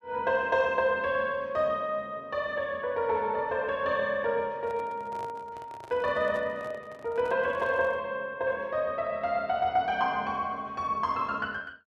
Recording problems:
handling noise; from 4.5 to 8 s; peak -11 dB vs average level

